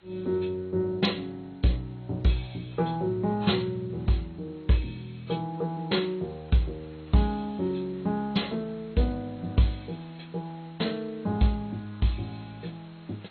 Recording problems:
lossy codec; MP2, then AAC, log-spectral distance 8 dB, nothing above 4.2 kHz
hiss; SNR 27 dB

